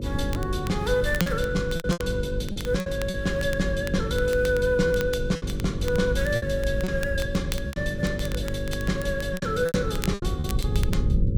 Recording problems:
hum; 50 Hz, harmonics up to 550 Hz, SNR 6 dB
rumble; below 110 Hz, SNR 6 dB
crackle; vinyl, SNR 15 dB
packet loss; 8% of the sound replaced, filled with repeated pitch periods

